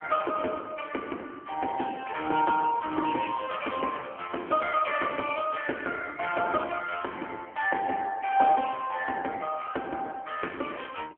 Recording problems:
phone line; 260 Hz to 3.1 kHz, AMR-NB

